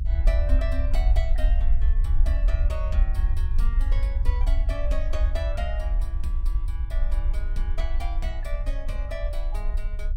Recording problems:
rumble; below 54 Hz, SNR -11 dB

